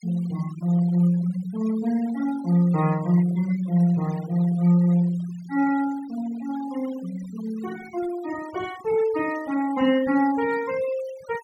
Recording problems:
denoising artefacts; signal-to-artefact ratio 19 dB

